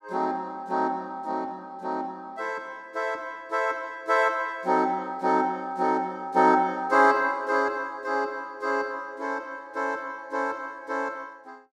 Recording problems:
none

